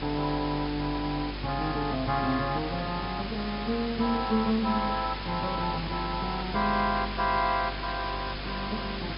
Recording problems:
treble cut off; nothing above 5.5 kHz
electrical hum; 50 Hz, harmonics up to 400 Hz, SNR 11 dB
background hiss; SNR 8 dB

